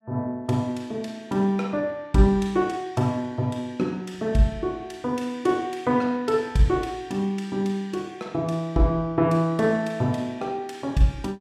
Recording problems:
none

